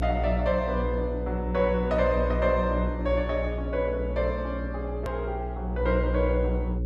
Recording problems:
electrical hum; 60 Hz, harmonics up to 540 Hz, SNR 3 dB
click at an edit; at 5 s

